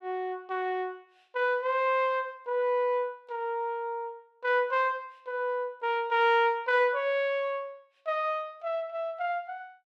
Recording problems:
none

